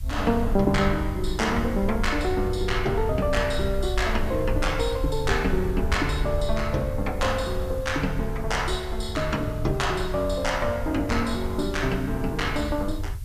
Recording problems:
hiss; slope +1 dB per octave, SNR 24 dB
low-frequency rumble; below 72 Hz, SNR 6 dB

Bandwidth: 14.5 kHz